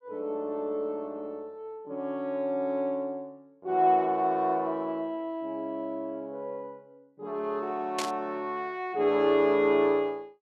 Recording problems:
static burst; at 8 s; peak 0 dB vs average level

